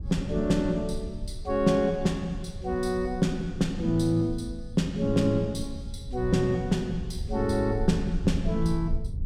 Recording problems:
rumble; below 82 Hz, SNR 10 dB

